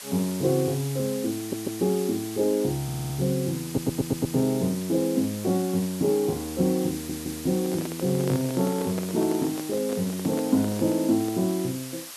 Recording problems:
hiss; slope +2 dB per octave, SNR 12 dB
stutter; 4 times, first at 1.5 s
microphone handling noise; from 7.5 to 11 s; peak -3 dB vs average level

